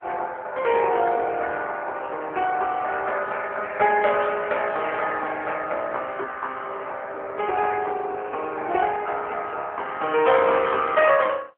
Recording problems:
telephone audio; 340 Hz to 3.2 kHz, AMR-NB

